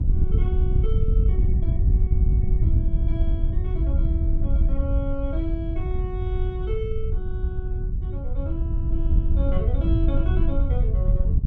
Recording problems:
wind noise; below 80 Hz, SNR -11 dB

